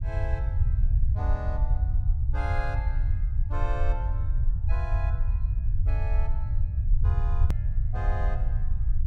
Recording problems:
rumble; below 78 Hz, SNR -12 dB
edit click; at 7.5 s

